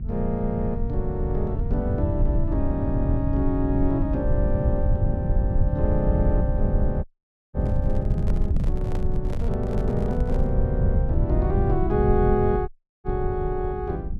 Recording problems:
hum; 50 Hz, harmonics up to 400 Hz, SNR 18 dB
rumble; below 110 Hz, SNR -2 dB
audio cutting out; at 7 s and at 13 s
handling noise; from 7.5 to 11 s; peak -6 dB vs average level

